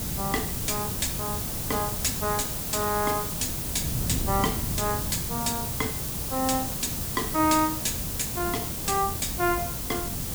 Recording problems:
hiss; SNR 1 dB
wind noise; below 190 Hz, SNR 7 dB

